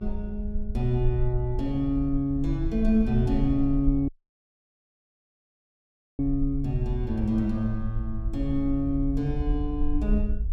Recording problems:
hum; 50 Hz, harmonics up to 350 Hz, SNR 18 dB
rumble; below 54 Hz, SNR 6 dB
dropout; at 4 s for 2 s

